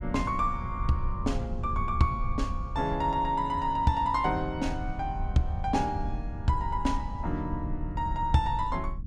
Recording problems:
rumble; below 82 Hz, SNR 6 dB

